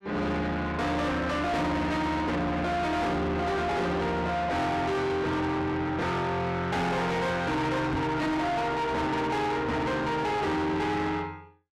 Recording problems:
distorted audio; soft clipping, signal-to-distortion ratio 6 dB
microphone thump; at 8 s; peak +4 dB vs average level

